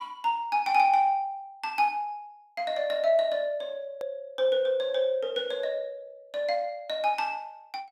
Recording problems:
click at an edit; at 4 s

